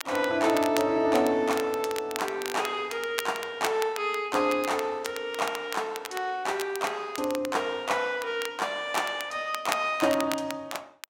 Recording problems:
crackle; vinyl, SNR 11 dB

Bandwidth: 16 kHz